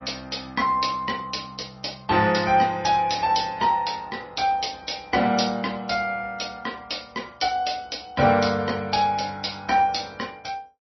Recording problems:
lossy codec; MP3, log-spectral distance 8 dB, nothing above 5.7 kHz

